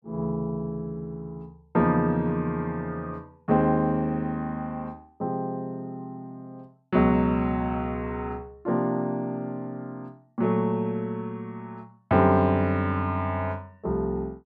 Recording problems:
none

